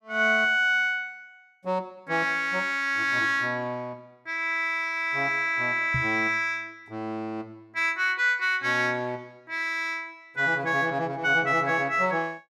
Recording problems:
knock on the microphone; at 6 s; peak -2 dB vs average level

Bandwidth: 15 kHz